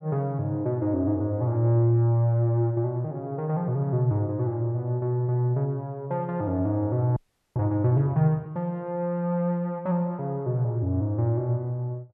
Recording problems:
frozen audio; at 7 s

